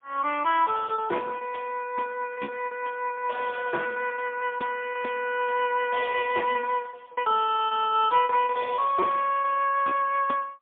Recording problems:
phone line; 240 Hz to 3.4 kHz, AMR-NB, then MP3
lost packets; 12% of the sound replaced, filled with repeated pitch periods

